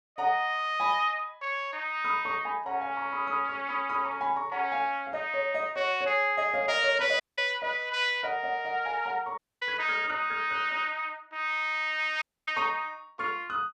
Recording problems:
audio cutting out; at 7 s, at 9.5 s and at 12 s

